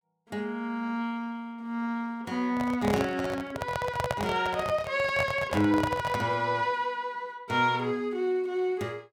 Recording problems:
microphone handling noise; from 2.5 to 6.5 s; peak +3 dB vs average level

